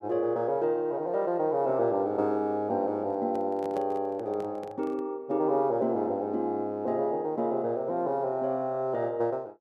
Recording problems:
microphone handling noise; from 3 to 5 s; peak -10 dB vs average level

